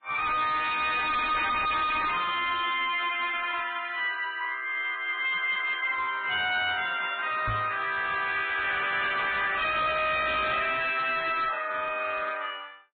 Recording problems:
treble missing; nothing above 3.8 kHz
lossy compression; MP3, log-spectral distance 6 dB
distorted audio; hard clipping, signal-to-distortion ratio 6 dB
microphone bump; at 7.5 s; peak -2 dB vs average level

